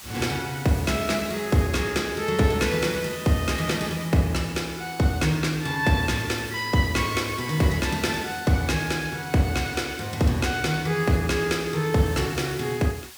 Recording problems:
hiss; SNR 16 dB

